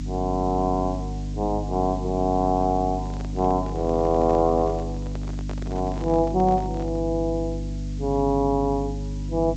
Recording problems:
low-pass filter; nothing above 8 kHz
electrical hum; 50 Hz, harmonics up to 300 Hz, SNR 7 dB
hiss; slope +2 dB per octave, SNR 25 dB
handling noise; from 3 to 7 s; peak -8 dB vs average level

